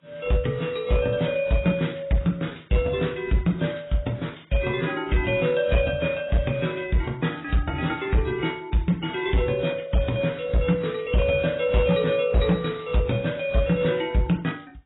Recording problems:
lossy compression; AAC, then AAC, log-spectral distance 4 dB, nothing above 3.8 kHz
distortion; hard clipping, signal-to-distortion ratio 12 dB

